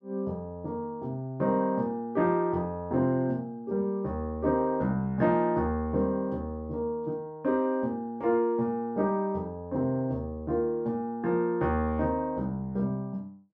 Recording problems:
none

